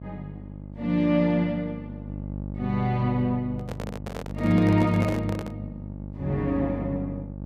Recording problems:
hum; 50 Hz, harmonics up to 850 Hz, SNR 11 dB
handling noise; from 3.5 to 5.5 s; peak -5 dB vs average level

